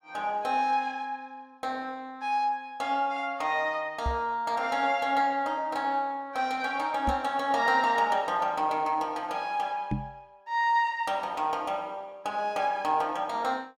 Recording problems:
knock on the microphone; at 4 s, at 7 s and at 10 s; peak +2 dB vs average level

